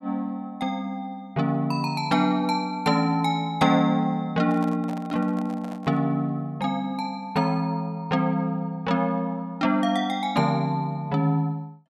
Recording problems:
handling noise; from 4.5 to 6 s; peak -10 dB vs average level

